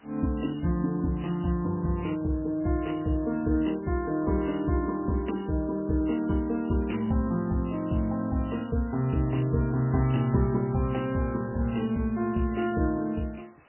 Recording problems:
codec artefacts; MP3, log-spectral distance 7 dB, nothing above 3 kHz
hiss; SNR 29 dB

